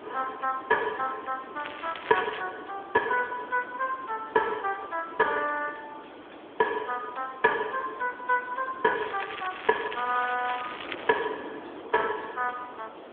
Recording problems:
telephone audio; 240 Hz to 2.3 kHz, AMR-NB
background hiss; SNR 23 dB
wind on the microphone; below 940 Hz, SNR 16 dB
crackling; at 1.5 s and from 9 to 11 s; loose cable, SNR 12 dB

